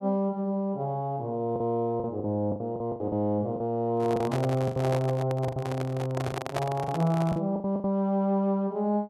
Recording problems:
packet loss; 10% of the sound replaced, filled with the last packet
microphone handling noise; from 4 to 7.5 s; peak +1 dB vs average level

